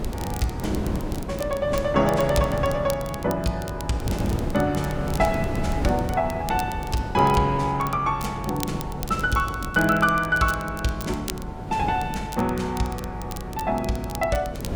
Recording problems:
hum; 50 Hz, harmonics up to 600 Hz, SNR 15 dB
wind on the microphone; below 340 Hz, SNR 9 dB
crackling; vinyl, SNR 16 dB

